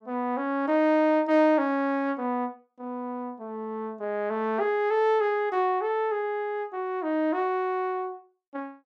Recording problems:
none

